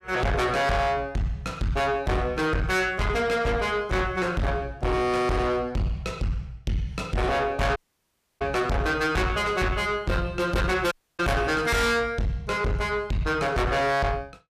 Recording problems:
distortion; soft clipping, signal-to-distortion ratio 6 dB
audio cutting out; at 8 s for 0.5 s and at 11 s

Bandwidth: 15 kHz